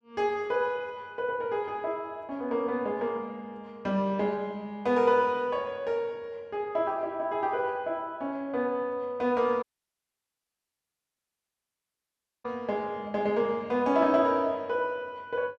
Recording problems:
audio cutting out; at 9.5 s for 3 s

